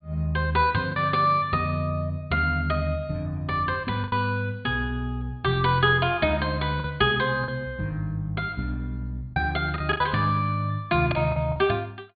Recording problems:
treble cut off; nothing above 4.6 kHz
lost packets; 4% of the sound replaced, filled with the last packet

